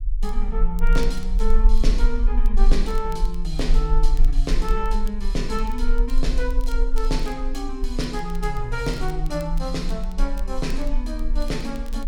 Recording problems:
low-frequency rumble; below 34 Hz, strongest tone 18 Hz, SNR -3 dB
crackling; vinyl, SNR 21 dB

